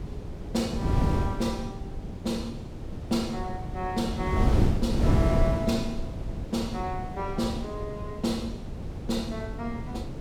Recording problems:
wind on the microphone; below 220 Hz, SNR -1 dB

